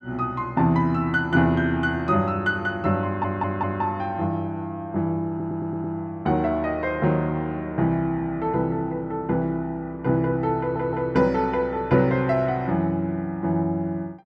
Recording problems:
audio stuttering; at 3 s, at 5.5 s and at 11 s

